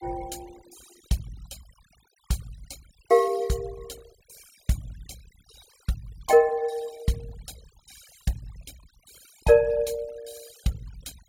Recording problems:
denoising artefacts; signal-to-artefact ratio 23 dB

